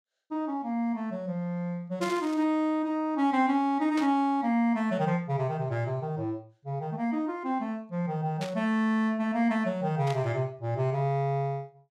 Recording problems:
burst of static; 4 times, first at 2 s; peak -6 dB vs average level

